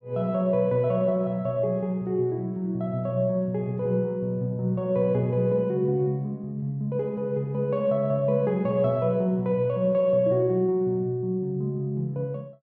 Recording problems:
none

